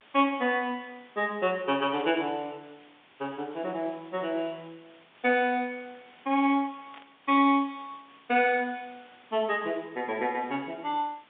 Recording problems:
phone line; 240 Hz to 3.6 kHz, G.711
background hiss; SNR 27 dB
static burst; at 2 s and at 7 s; peak -15 dB vs average level

